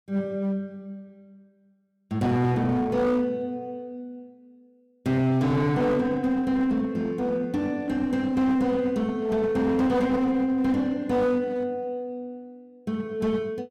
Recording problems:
distortion; hard clipping, uneven, signal-to-distortion ratio 10 dB

